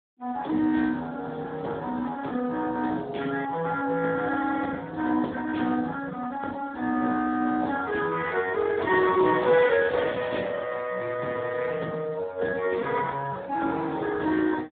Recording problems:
telephone audio; 170 Hz to 2.5 kHz, Speex
crackle; from 9 to 10 s; loose cable, SNR 18 dB

